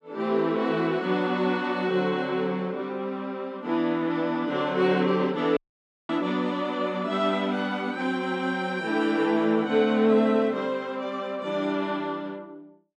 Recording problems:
dropout; at 5.5 s for 0.5 s

